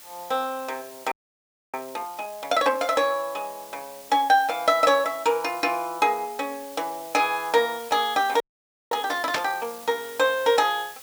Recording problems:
hiss; slope +1 dB per octave, SNR 18 dB
audio freezing; at 1 s for 0.5 s and at 8.5 s for 0.5 s
burst of static; at 9.5 s; peak +3 dB vs average level

